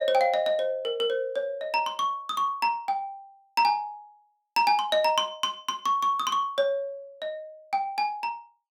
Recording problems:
none

